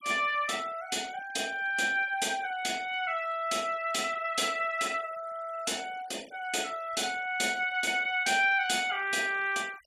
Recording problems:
denoising artefacts; signal-to-artefact ratio 22 dB

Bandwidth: 14 kHz